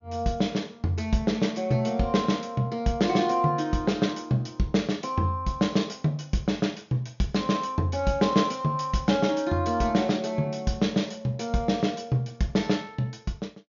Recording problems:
treble missing; nothing above 6.9 kHz

